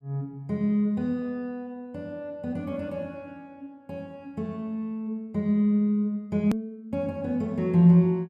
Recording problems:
edit click; at 6.5 s

